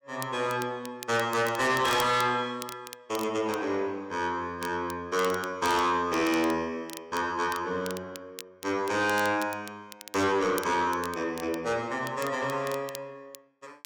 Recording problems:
distorted audio; soft clipping, signal-to-distortion ratio 10 dB
crackling; vinyl, SNR 16 dB

